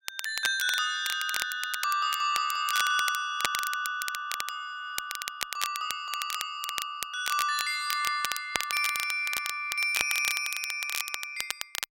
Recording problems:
crackle; vinyl, SNR 5 dB

